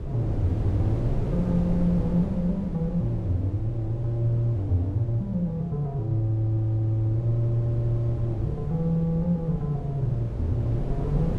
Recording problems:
wind noise; below 240 Hz, SNR 7 dB

